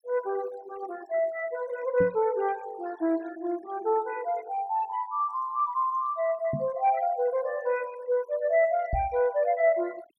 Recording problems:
noise reduction artefacts; signal-to-artefact ratio 22 dB
microphone bump; at 2 s, at 6.5 s and at 9 s; peak +1 dB vs average level

